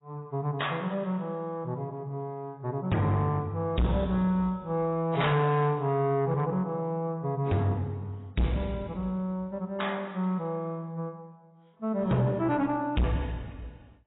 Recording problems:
lossy compression; AAC, log-spectral distance 2 dB, nothing above 3.8 kHz
distortion; soft clipping, signal-to-distortion ratio 7 dB

